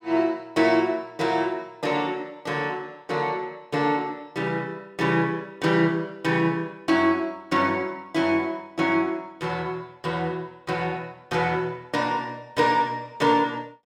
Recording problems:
none

